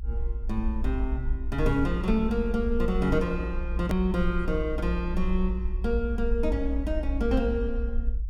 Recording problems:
low-frequency rumble; below 58 Hz, SNR 3 dB
click at an edit; at 4 s

